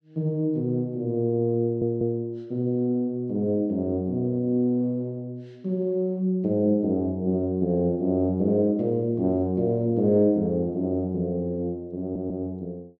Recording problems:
stutter; at 1.5 s and at 12 s

